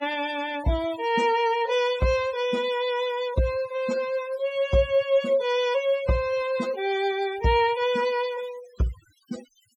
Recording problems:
denoising artefacts; signal-to-artefact ratio 17 dB

